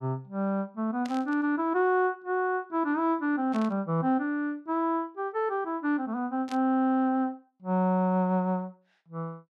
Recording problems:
static burst; at 1 s, at 3.5 s and at 6.5 s; peak -10 dB vs average level

